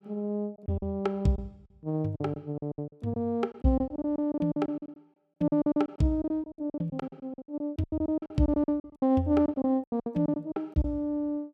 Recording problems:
lost packets; 18% of the sound replaced, filled with silence

